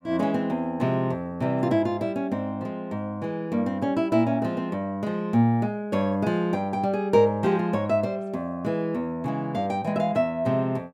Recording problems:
none

